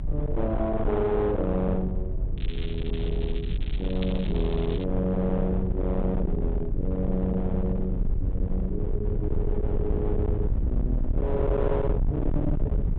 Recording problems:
treble missing; nothing above 4 kHz
distortion; hard clipping, uneven, signal-to-distortion ratio 7 dB
hum; 60 Hz, harmonics up to 900 Hz, SNR 23 dB
rumble; below 92 Hz, SNR 1 dB
crackle; from 2.5 to 5 s; loose cable, SNR 16 dB

